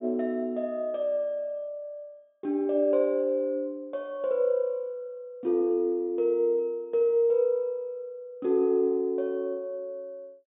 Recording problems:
treble missing; nothing above 3.7 kHz

